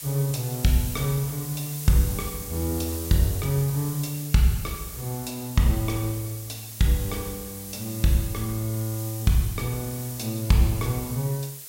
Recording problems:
hiss; SNR 10 dB

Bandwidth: 16 kHz